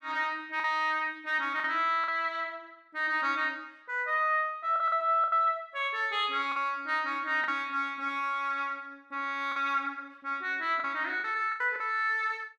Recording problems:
lost packets; 5% of the sound replaced, filled with the last packet

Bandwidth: 13 kHz